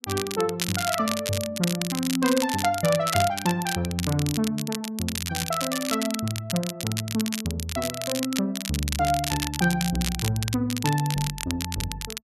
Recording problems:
crackle; vinyl, SNR 4 dB

